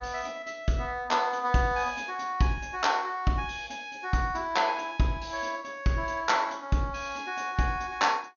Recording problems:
lossy compression; MP2, log-spectral distance 4 dB, nothing above 6.7 kHz

